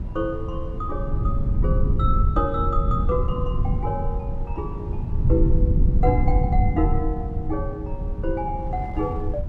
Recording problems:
rumble; below 110 Hz, SNR -3 dB
wind noise; below 430 Hz, SNR 15 dB

